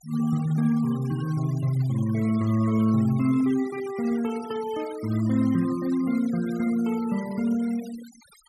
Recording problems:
noise reduction artefacts; signal-to-artefact ratio 20 dB

